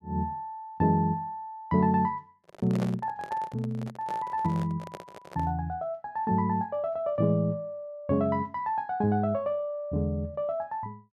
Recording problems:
microphone handling noise; from 2.5 to 5.5 s; peak -3 dB vs average level

